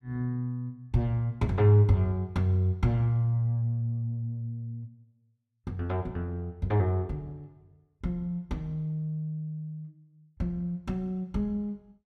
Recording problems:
none

